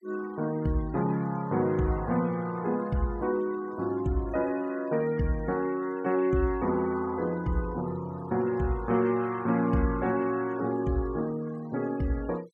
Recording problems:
denoising artefacts; signal-to-artefact ratio 23 dB

